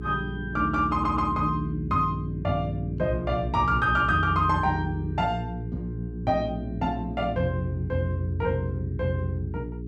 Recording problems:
hum; 60 Hz, harmonics up to 420 Hz, SNR 8 dB
stutter; at 1 s

